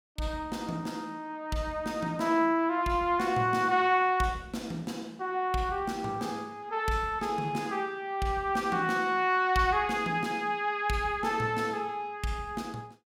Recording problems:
none

